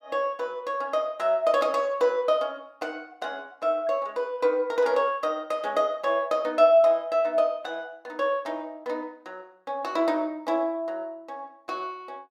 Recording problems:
none

